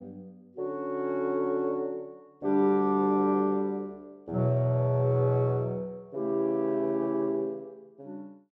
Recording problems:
none

